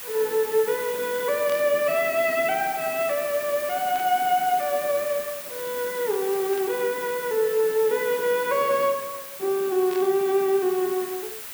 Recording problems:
hiss; slope 0 dB per octave, SNR 10 dB
burst of static; 4 times, first at 1.5 s; peak -12 dB vs average level

